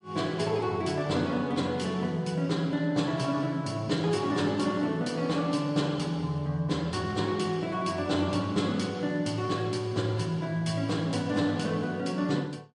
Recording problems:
lossy compression; MP3, log-spectral distance 2 dB, nothing above 10.4 kHz

